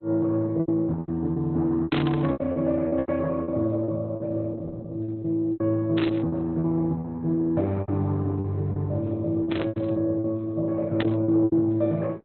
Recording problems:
lossy compression; Opus, log-spectral distance 2 dB, nothing above 3.8 kHz
lost packets; 12% of the sound replaced, filled with repeated pitch periods
static burst; 4 times, first at 2 s; peak -2 dB vs average level

